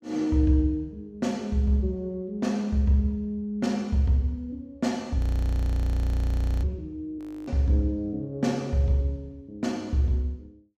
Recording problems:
audio freezing; at 5 s for 1.5 s and at 7 s

